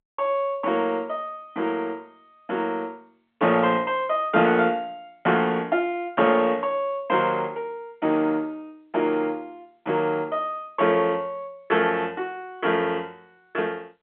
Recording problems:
telephone audio; 130 Hz to 3.4 kHz, G.711

